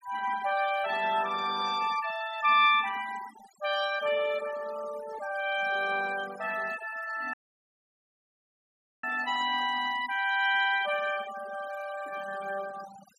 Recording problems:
noise reduction artefacts; signal-to-artefact ratio 15 dB
audio cutting out; at 7.5 s for 1.5 s

